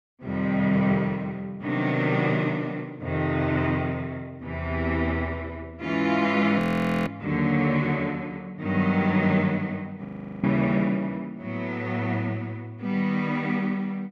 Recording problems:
audio freezing; at 6.5 s and at 10 s

